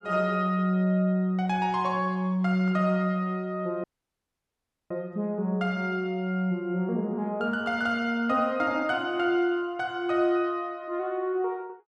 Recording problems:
dropout; at 4 s for 1 s

